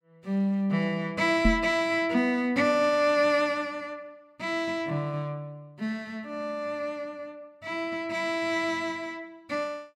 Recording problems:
knock on the microphone; at 1.5 s; peak +7 dB vs average level

